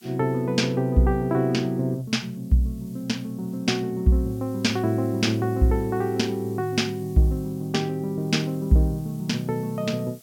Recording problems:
background hiss; slope +5 dB per octave, SNR 27 dB

